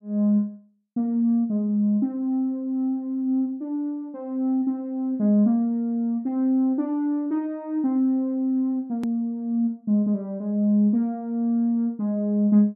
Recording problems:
click at an edit; at 9 s

